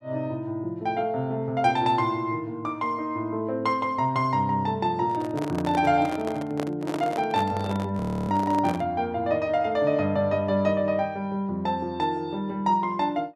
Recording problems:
handling noise; from 5 to 9 s; peak -2 dB vs average level
audio freezing; at 8 s

